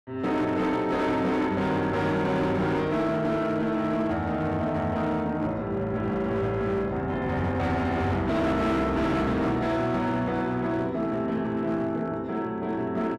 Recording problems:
distortion; hard clipping, signal-to-distortion ratio 11 dB

